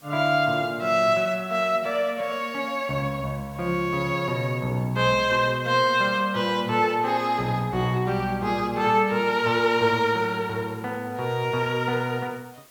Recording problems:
hiss; slope -2 dB per octave, SNR 28 dB

